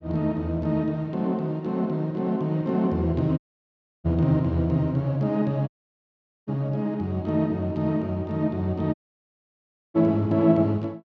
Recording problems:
audio cutting out; at 3.5 s for 0.5 s, at 5.5 s for 1 s and at 9 s for 1 s

